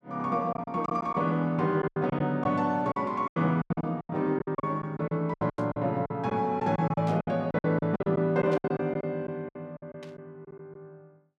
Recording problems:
packet loss; 15% of the sound replaced, filled with silence
static burst; 4 times, first at 5.5 s; peak -13 dB vs average level

